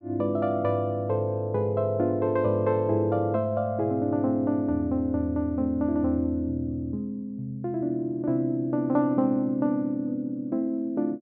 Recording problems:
none

